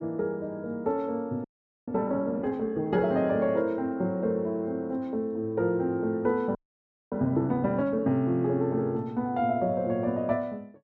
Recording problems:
frozen audio; at 1.5 s and at 6.5 s for 0.5 s

